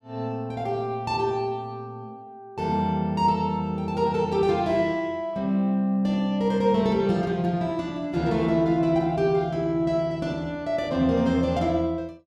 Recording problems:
none

